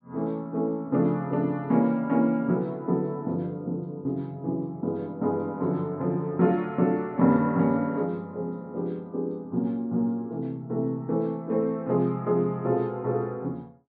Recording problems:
treble cut off; nothing above 4.9 kHz

